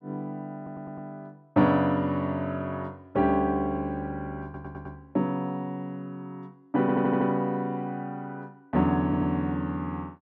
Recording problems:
stutter; 4 times, first at 0.5 s

